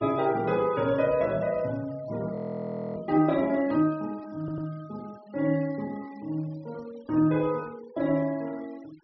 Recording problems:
treble cut off; nothing above 5.8 kHz
noise reduction artefacts; signal-to-artefact ratio 23 dB
frozen audio; at 2.5 s for 0.5 s
stutter; at 4.5 s

